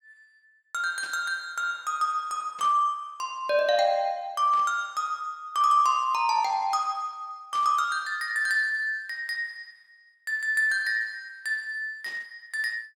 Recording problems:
burst of static; 5 times, first at 1 s; peak -14 dB vs average level

